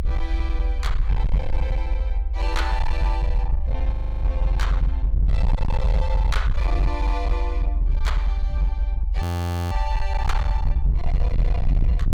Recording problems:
distortion; hard clipping, signal-to-distortion ratio 7 dB
low-frequency rumble; below 64 Hz, SNR -7 dB
audio freezing; at 4 s and at 9 s

